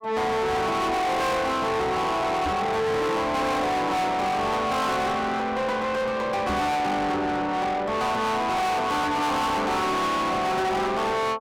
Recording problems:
distorted audio; soft clipping, signal-to-distortion ratio 6 dB
microphone thump; at 2.5 s and at 6.5 s; peak +3 dB vs average level

